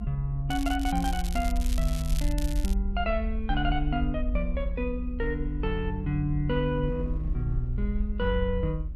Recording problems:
low-frequency rumble; below 64 Hz, SNR 2 dB
wind noise; below 230 Hz, SNR 17 dB
crackle; until 2.5 s; loose cable, SNR 11 dB

